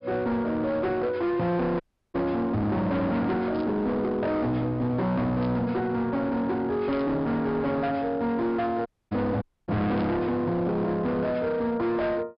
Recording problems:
low-pass filter; nothing above 5.5 kHz
distortion; hard clipping, signal-to-distortion ratio 8 dB
dropout; at 2 s, at 9 s and at 9.5 s
burst of static; 4 times, first at 3.5 s; peak -15 dB vs average level

